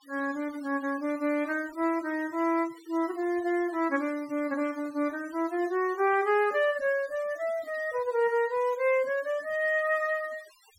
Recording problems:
denoising artefacts; signal-to-artefact ratio 23 dB

